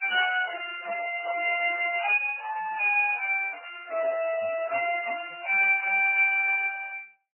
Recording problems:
lossy codec; Speex, then MP3, log-spectral distance 6 dB, nothing above 2.4 kHz

